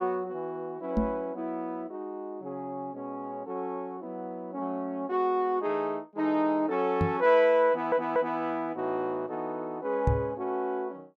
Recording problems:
knock on the microphone; at 1 s, at 7 s and at 10 s; peak +6 dB vs average level
audio stuttering; at 7.5 s

